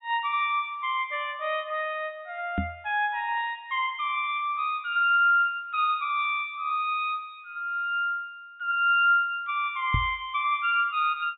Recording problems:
low-pass filter; nothing above 4 kHz
microphone thump; at 2.5 s and at 10 s; peak +2 dB vs average level

